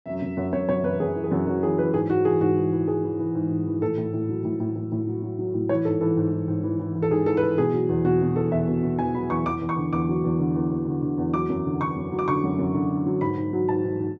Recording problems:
treble cut off; nothing above 8 kHz

